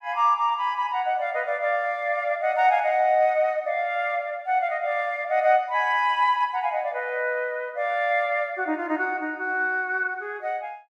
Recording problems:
none

